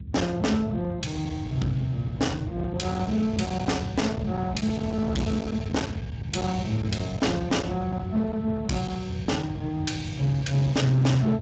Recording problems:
lossy compression; Speex, log-spectral distance 3 dB, nothing above 7.6 kHz
distorted audio; hard clipping, uneven, signal-to-distortion ratio 10 dB
rumble; below 220 Hz, SNR 7 dB

